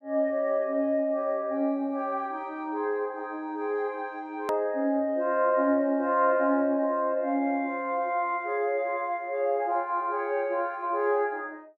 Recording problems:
click at an edit; at 4.5 s

